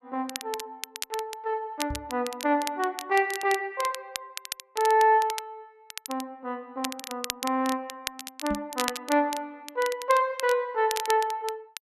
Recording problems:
crackle; vinyl, SNR 10 dB
knock on the microphone; at 2 s and at 8.5 s; peak -2 dB vs average level

